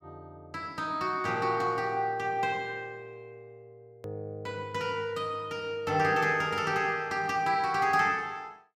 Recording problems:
click at an edit; at 4 s

